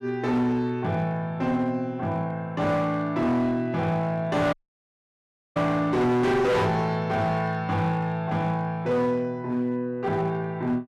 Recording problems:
distortion; hard clipping, signal-to-distortion ratio 8 dB
audio cutting out; at 4.5 s for 1 s

